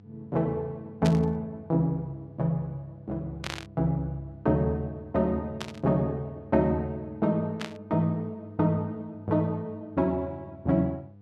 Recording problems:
hum; 50 Hz, harmonics up to 700 Hz, SNR 22 dB
static burst; 4 times, first at 1 s; peak -2 dB vs average level

